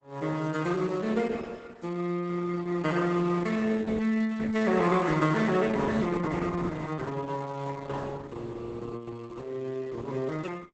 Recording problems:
lossy compression; Opus, log-spectral distance 4 dB, nothing above 8 kHz

